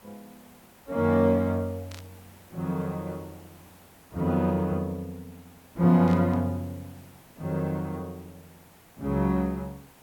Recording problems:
background hiss; SNR 26 dB
burst of static; at 2 s and at 6 s; peak -13 dB vs average level

